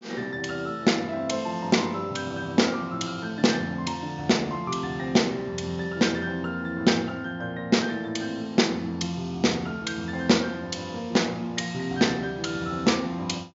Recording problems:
treble cut off; nothing above 7.3 kHz

